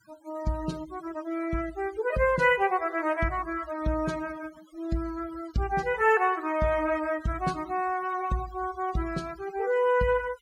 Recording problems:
noise reduction artefacts; signal-to-artefact ratio 21 dB

